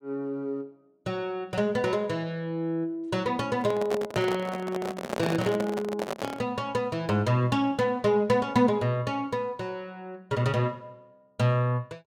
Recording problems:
handling noise; from 3.5 to 6.5 s; peak +1 dB vs average level

